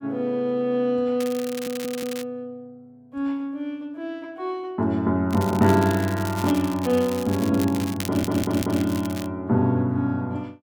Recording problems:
crackle; from 1 to 2 s and from 5.5 to 9.5 s; loose cable, SNR 13 dB
stutter; at 1.5 s and at 8 s

